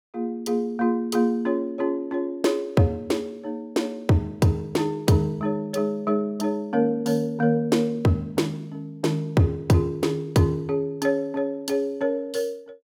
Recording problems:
none

